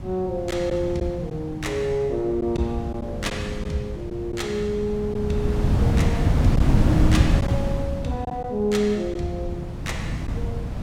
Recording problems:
wind noise; below 190 Hz, SNR -1 dB
lost packets; 2% of the sound replaced, filled with silence

